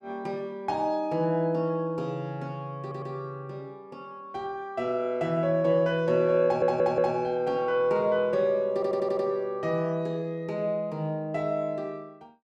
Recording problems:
audio stuttering; at 3 s, at 6.5 s and at 8.5 s

